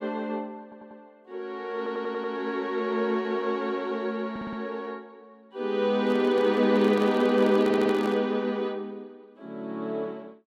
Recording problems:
stutter; 4 times, first at 0.5 s
microphone handling noise; from 6 to 8 s; peak -5 dB vs average level

